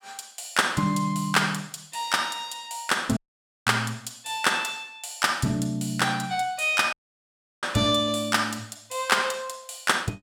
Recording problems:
audio cutting out; at 3 s and at 7 s for 0.5 s

